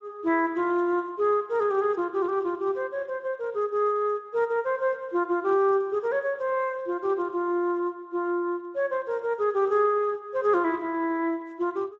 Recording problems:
codec artefacts; Speex, log-spectral distance 2 dB

